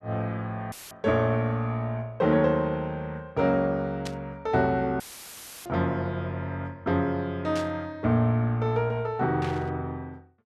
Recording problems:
dropout; at 0.5 s and at 5 s for 0.5 s; filled with static
static burst; 4 times, first at 4 s; peak -6 dB vs average level

